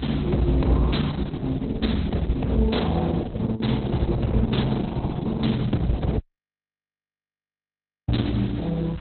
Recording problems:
lossy compression; Opus, log-spectral distance 9 dB, nothing above 4.1 kHz
background hiss; SNR 23 dB
low-frequency rumble; below 80 Hz, strongest tone 62 Hz, SNR 10 dB
dropout; at 6 s for 2 s

